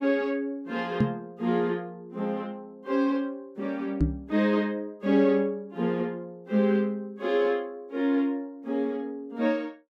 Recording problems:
microphone thump; at 1 s and at 4 s; peak +8 dB vs average level

